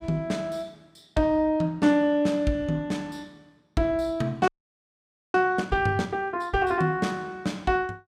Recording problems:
audio freezing; at 4.5 s for 1 s

